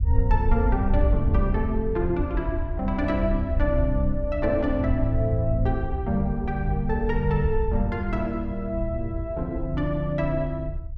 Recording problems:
rumble; below 76 Hz, SNR 2 dB

